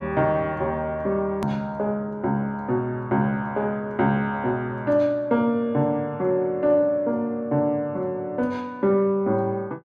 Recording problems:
hard cut with a click; at 1.5 s

